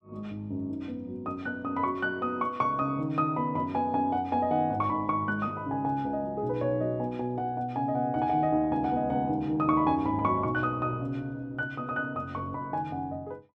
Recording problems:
none

